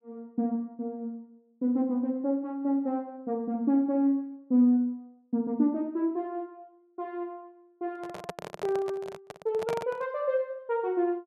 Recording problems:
handling noise; from 8 to 10 s; peak -1 dB vs average level

